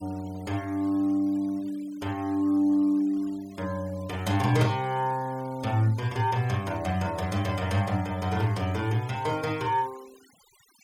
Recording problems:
denoising artefacts; signal-to-artefact ratio 23 dB

